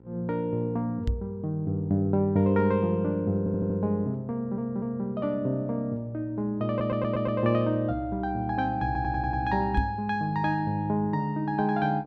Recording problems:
hum; 60 Hz, harmonics up to 1.3 kHz, SNR 26 dB
microphone thump; at 1 s and at 10 s; peak +5 dB vs average level
stutter; 4 times, first at 3.5 s

